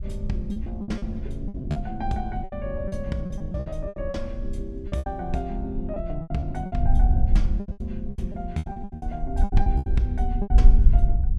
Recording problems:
wind noise; below 58 Hz, SNR -4 dB
lost packets; 16% of the sound replaced, filled with repeated pitch periods

